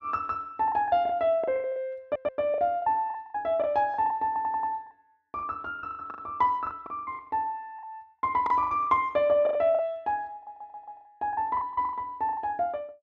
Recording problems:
lost packets; 15% of the sound replaced, filled with the last packet
stutter; at 2 s, at 4.5 s and at 10 s

